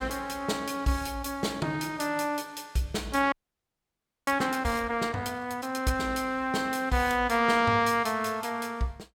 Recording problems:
frozen audio; at 3.5 s for 1 s

